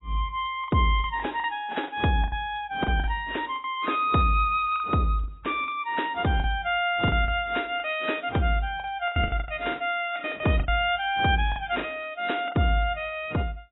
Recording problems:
lossy codec; AAC, then AAC, log-spectral distance 3 dB, nothing above 3.2 kHz
packet loss; 11% of the sound replaced, filled with the last packet

